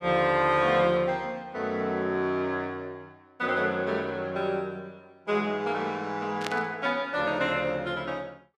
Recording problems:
burst of static; at 6.5 s; peak -1 dB vs average level

